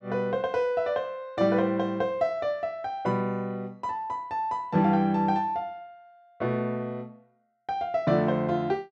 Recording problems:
none

